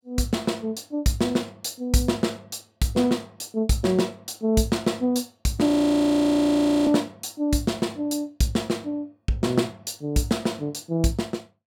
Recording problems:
audio freezing; at 5.5 s for 1 s

